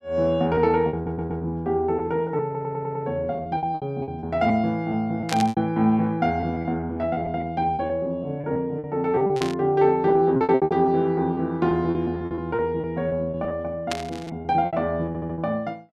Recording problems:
lost packets; 13% of the sound replaced, filled with repeated pitch periods
audio stuttering; at 1 s, at 2.5 s and at 15 s
static burst; at 5.5 s, at 9.5 s and at 14 s; peak 0 dB vs average level

